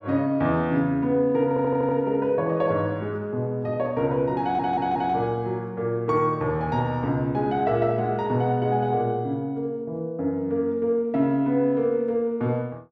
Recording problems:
stutter; at 1.5 s and at 4.5 s

